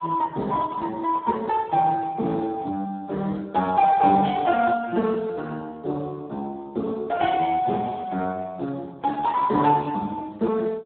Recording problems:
phone line; 150 Hz to 2 kHz, Speex

